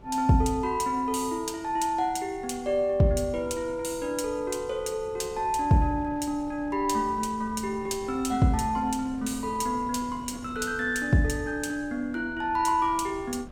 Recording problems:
wind noise; below 350 Hz, SNR 20 dB

